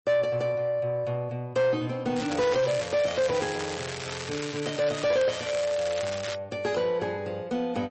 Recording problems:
codec artefacts; MP3, log-spectral distance 5 dB, nothing above 8 kHz
distorted audio; soft clipping, signal-to-distortion ratio 11 dB
crackling; from 2 to 6.5 s; loose cable, SNR 8 dB

